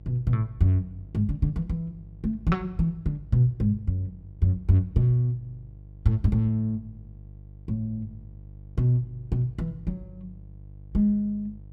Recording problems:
hum; 50 Hz, harmonics up to 500 Hz, SNR 20 dB

